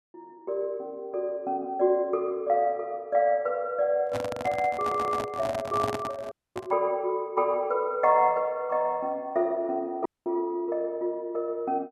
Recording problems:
microphone handling noise; from 4 to 6.5 s; peak -1 dB vs average level
stutter; at 5 s
dropout; at 6.5 s and at 10 s

